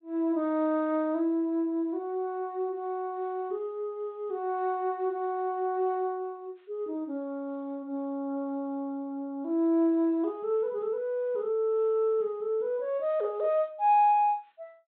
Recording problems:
low-pass filter; nothing above 4 kHz

